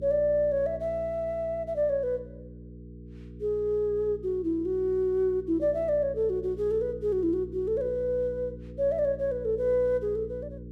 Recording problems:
hum; 60 Hz, harmonics up to 480 Hz, SNR 15 dB

